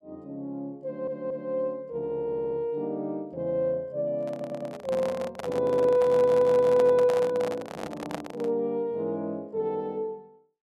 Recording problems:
audio stuttering; 4 times, first at 1 s
handling noise; from 4 to 8.5 s; peak -3 dB vs average level

